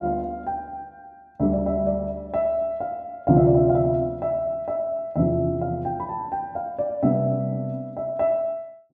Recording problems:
none

